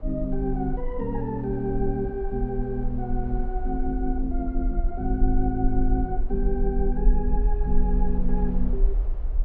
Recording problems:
rumble; below 42 Hz, strongest tone 20 Hz, SNR 1 dB
wind noise; below 730 Hz, SNR 20 dB

